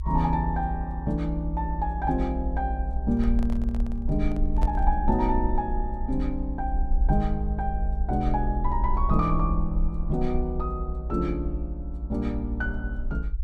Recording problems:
rumble; below 60 Hz, SNR 2 dB
microphone handling noise; from 3 to 5 s; peak -6 dB vs average level

